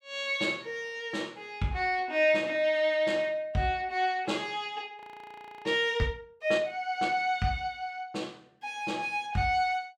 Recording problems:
frozen audio; at 5 s for 0.5 s

